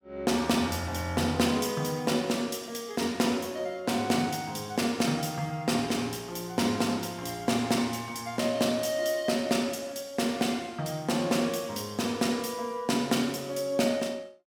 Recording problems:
none

